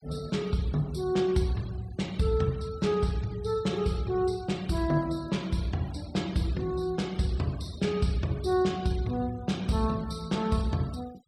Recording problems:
denoising artefacts; signal-to-artefact ratio 21 dB

